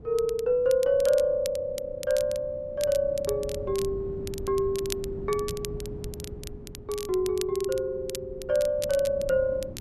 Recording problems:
wind on the microphone; below 250 Hz, SNR 15 dB
crackling; vinyl, SNR 15 dB

